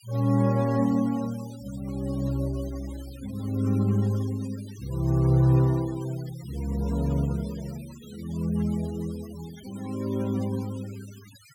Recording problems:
noise reduction artefacts; signal-to-artefact ratio 21 dB

